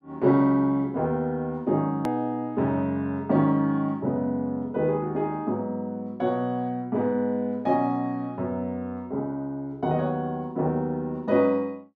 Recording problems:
edit click; at 2 s

